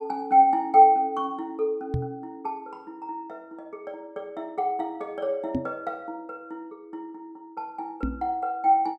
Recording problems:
microphone thump; at 2 s, at 5.5 s and at 8 s; peak +1 dB vs average level

